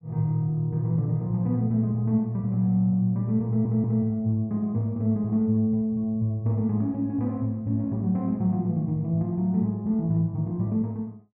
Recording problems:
audio stuttering; at 3.5 s

